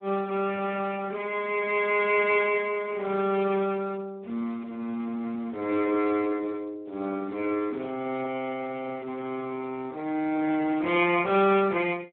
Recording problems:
telephone audio; 280 Hz to 3.5 kHz, Speex

